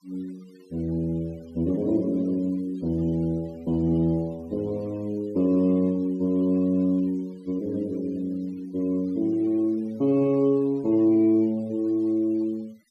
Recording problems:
noise reduction artefacts; signal-to-artefact ratio 28 dB

